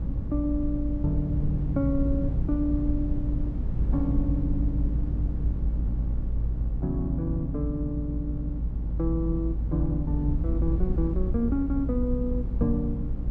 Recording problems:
hum; 60 Hz, harmonics up to 840 Hz, SNR 9 dB
rumble; below 66 Hz, strongest tone 54 Hz, SNR 0 dB

